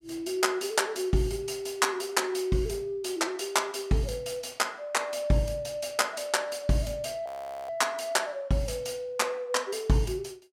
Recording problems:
frozen audio; at 7.5 s

